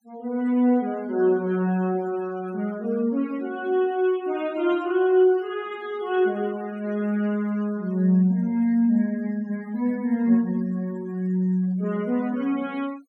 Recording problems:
noise reduction artefacts; signal-to-artefact ratio 24 dB

